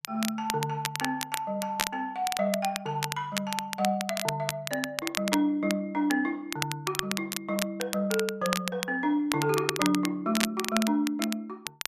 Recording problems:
crackle; vinyl, SNR 4 dB

